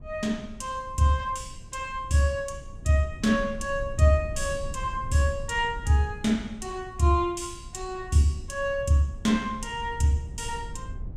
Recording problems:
rumble; below 96 Hz, SNR 15 dB

